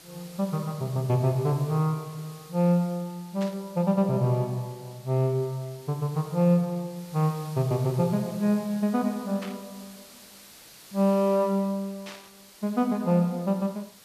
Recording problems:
background hiss; slope 0 dB per octave, SNR 22 dB
static burst; at 3.5 s, at 9.5 s and at 12 s; peak -10 dB vs average level

